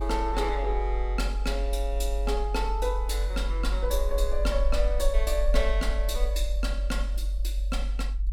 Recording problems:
rumble; below 48 Hz, strongest tone 46 Hz, SNR -2 dB

